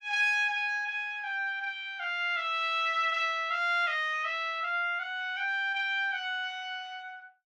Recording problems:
none

